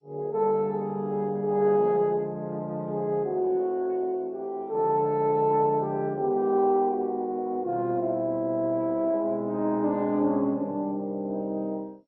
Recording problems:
lossy codec; MP3, then MP2, log-spectral distance 2 dB

